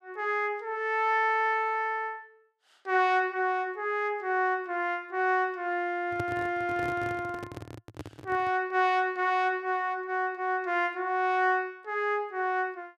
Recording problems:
microphone handling noise; from 6 to 8.5 s; peak -4 dB vs average level

